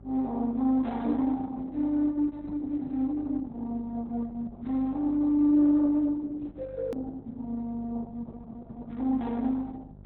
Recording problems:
lossy codec; Opus, log-spectral distance 2 dB, nothing above 18.3 kHz
hum; 50 Hz, harmonics up to 650 Hz, SNR 22 dB
hard cut with a click; at 7 s

